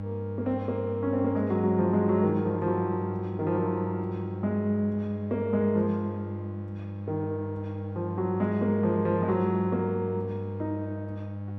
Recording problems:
hum; 50 Hz, harmonics up to 800 Hz, SNR 7 dB

